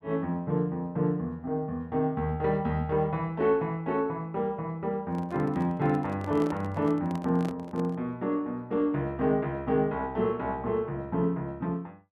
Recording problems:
microphone handling noise; from 5 to 8 s; peak -6 dB vs average level

